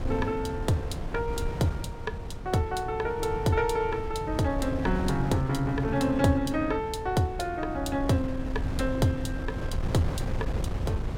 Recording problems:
wind noise; below 160 Hz, SNR 6 dB

